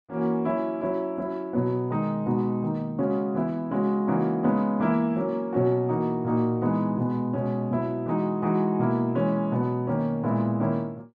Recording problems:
none

